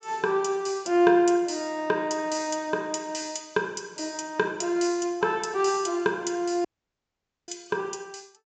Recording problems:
treble cut off; nothing above 8 kHz
audio cutting out; at 6.5 s for 1 s

